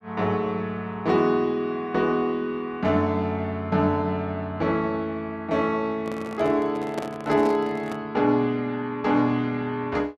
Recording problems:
handling noise; from 6 to 8 s; peak -2 dB vs average level

